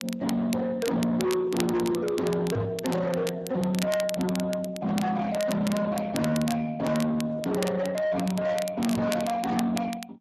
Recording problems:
codec artefacts; Speex, log-spectral distance 3 dB
distortion; soft clipping, signal-to-distortion ratio 6 dB
crackle; vinyl, SNR 12 dB
microphone bump; at 2.5 s and at 9 s; peak +3 dB vs average level

